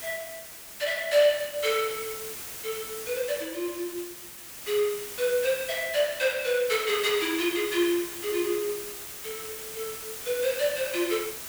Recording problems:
hiss; slope 0 dB per octave, SNR 9 dB

